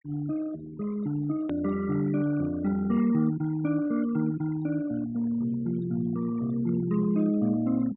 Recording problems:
low-pass filter; nothing above 3.7 kHz
noise reduction artefacts; signal-to-artefact ratio 18 dB
click at an edit; at 1.5 s

